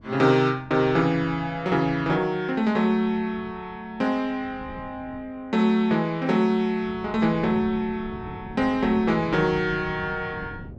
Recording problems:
wind noise; below 260 Hz, SNR 19 dB

